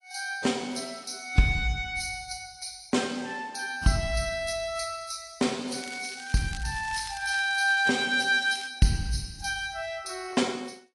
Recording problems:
codec artefacts; AAC, log-spectral distance 5 dB, nothing above 10.4 kHz
crackle; from 5.5 to 8.5 s; loose cable, SNR 15 dB

